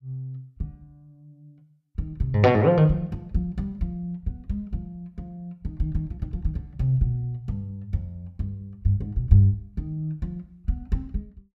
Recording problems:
none

